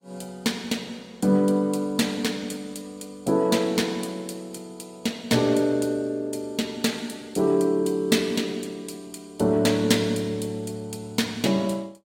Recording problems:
codec artefacts; AAC, log-spectral distance 3 dB, nothing above 16.5 kHz

